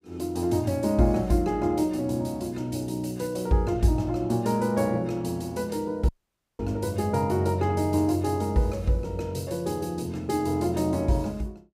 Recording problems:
audio cutting out; at 6 s for 0.5 s

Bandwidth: 15.5 kHz